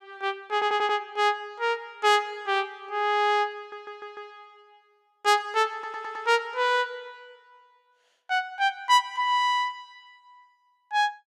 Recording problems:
stutter; at 0.5 s, at 3.5 s and at 5.5 s

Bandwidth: 15.5 kHz